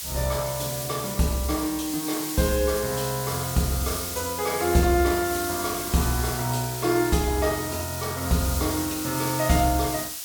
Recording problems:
hiss; slope +3 dB per octave, SNR 6 dB

